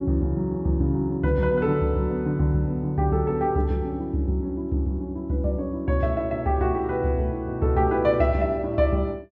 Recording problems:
low-pass filter; nothing above 8 kHz

